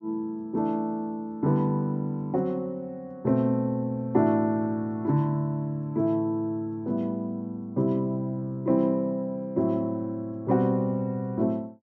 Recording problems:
treble missing; nothing above 8 kHz

